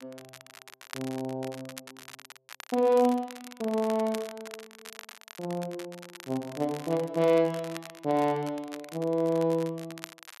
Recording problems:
crackle; vinyl, SNR 17 dB

